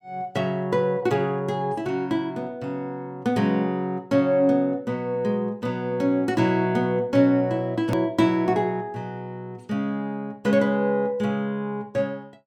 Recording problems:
click at an edit; at 8 s

